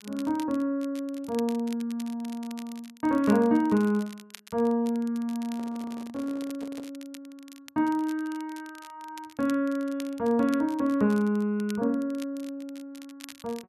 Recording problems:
crackling; vinyl, SNR 21 dB
handling noise; from 5.5 to 7 s; peak -10 dB vs average level

